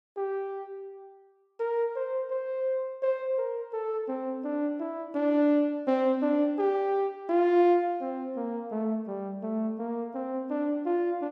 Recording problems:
none

